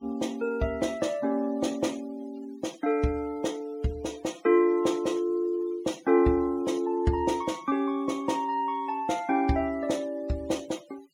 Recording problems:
denoising artefacts; signal-to-artefact ratio 24 dB

